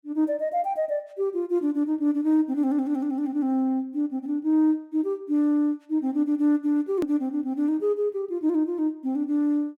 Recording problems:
hard cut with a click; at 7 s

